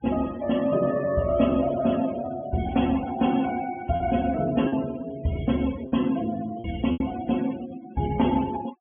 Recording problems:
treble cut off; nothing above 3.3 kHz
noise reduction artefacts; signal-to-artefact ratio 17 dB
packet loss; 3% of the sound replaced, filled with repeated pitch periods

